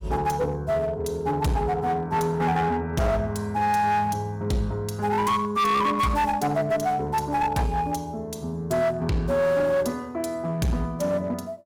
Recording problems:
distorted audio; hard clipping, uneven, signal-to-distortion ratio 10 dB

